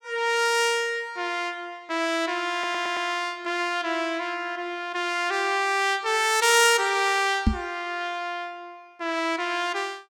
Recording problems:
audio stuttering; at 2.5 s
knock on the microphone; at 7.5 s; peak +6 dB vs average level

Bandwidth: 17.5 kHz